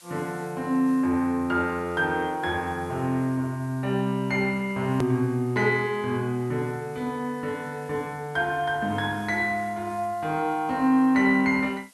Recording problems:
background hiss; slope +2 dB per octave, SNR 27 dB
edit click; at 5 s

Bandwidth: 12 kHz